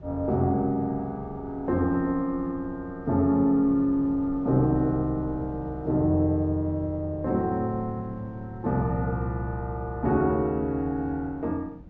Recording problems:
low-pass filter; nothing above 8 kHz
wind on the microphone; below 220 Hz, SNR 18 dB

